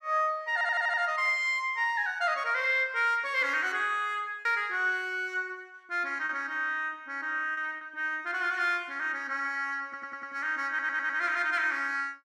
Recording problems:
packet loss; 1.5% of the sound replaced, filled with repeated pitch periods
stutter; at 0.5 s, at 10 s and at 11 s

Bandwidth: 14 kHz